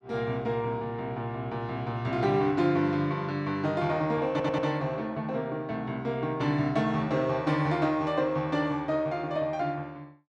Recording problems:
stutter; at 4.5 s

